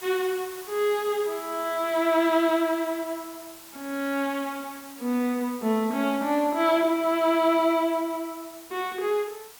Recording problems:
background hiss; SNR 18 dB

